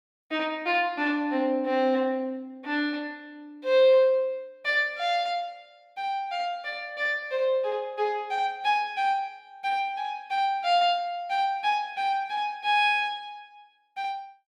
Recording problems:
none

